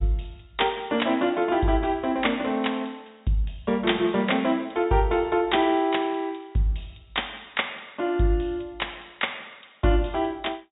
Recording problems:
low-pass filter; nothing above 4 kHz

